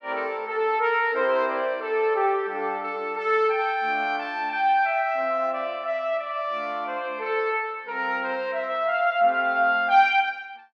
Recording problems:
none

